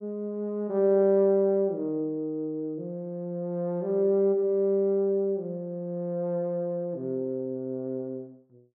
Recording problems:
none

